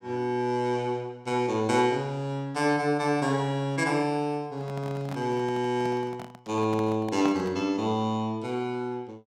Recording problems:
handling noise; from 4.5 to 7.5 s; peak -2 dB vs average level

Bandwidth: 16.5 kHz